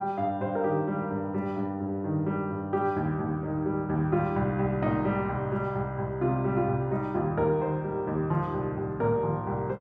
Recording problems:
none

